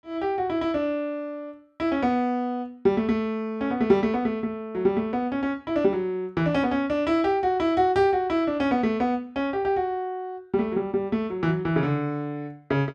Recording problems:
none

